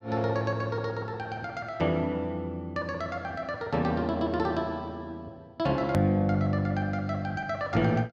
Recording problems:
click at an edit; at 6 s

